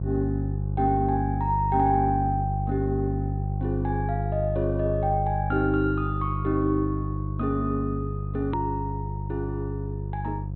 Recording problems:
treble cut off; nothing above 4 kHz
hum; 50 Hz, harmonics up to 500 Hz, SNR 2 dB
click at an edit; at 8.5 s

